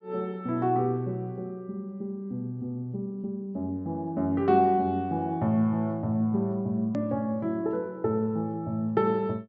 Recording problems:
treble cut off; nothing above 8 kHz
hard cut with a click; at 7 s

